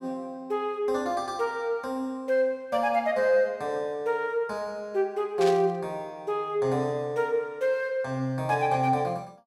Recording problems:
burst of static; at 5.5 s; peak -4 dB vs average level

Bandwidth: 16 kHz